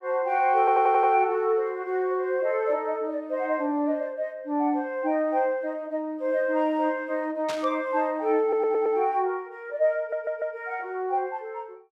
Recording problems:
audio stuttering; at 0.5 s, at 8.5 s and at 10 s
burst of static; at 7.5 s; peak -6 dB vs average level

